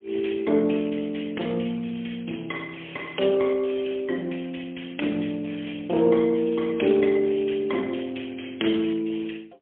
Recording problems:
telephone audio; 220 Hz to 3.3 kHz, AMR-NB, then MP3

